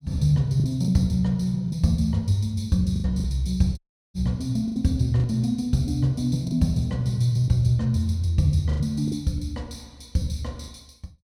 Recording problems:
lost packets; 6% of the sound replaced, filled with the last packet
dropout; at 4 s

